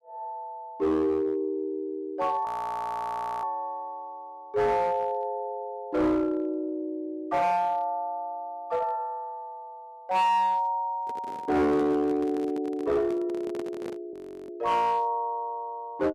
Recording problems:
distorted audio; hard clipping, uneven, signal-to-distortion ratio 11 dB
audio freezing; at 2.5 s for 1 s and at 14 s
handling noise; from 11 to 14 s; peak -6 dB vs average level

